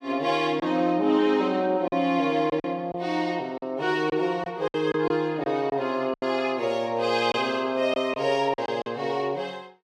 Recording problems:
lost packets; 6% of the sound replaced, filled with silence

